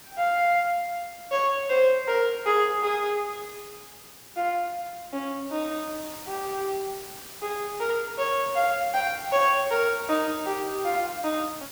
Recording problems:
background hiss; slope -1 dB per octave, SNR 15 dB

